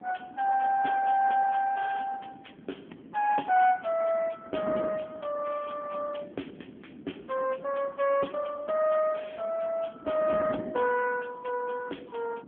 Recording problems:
telephone audio; 220 Hz to 2.8 kHz, AMR-NB
wind noise; below 370 Hz, SNR 16 dB

